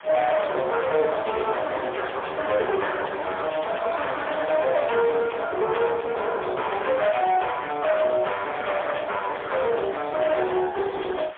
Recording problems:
telephone audio; 340 Hz to 3.4 kHz, AMR-NB, then MP3
distorted audio; hard clipping, signal-to-distortion ratio 8 dB
hiss; SNR 20 dB

